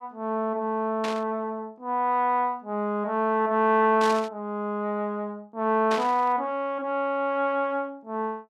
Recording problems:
burst of static; at 1 s, at 4 s and at 6 s; peak -4 dB vs average level

